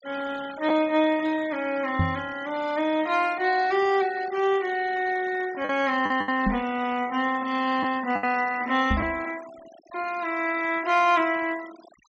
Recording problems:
treble missing; nothing above 8 kHz
denoising artefacts; signal-to-artefact ratio 19 dB
packet loss; 2% of the sound replaced, filled with the last packet
knock on the microphone; at 2 s, at 6.5 s and at 9 s; peak +4 dB vs average level

